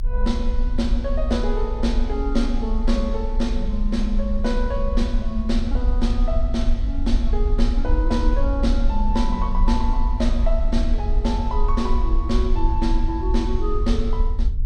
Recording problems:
rumble; below 50 Hz, strongest tone 28 Hz, SNR -2 dB

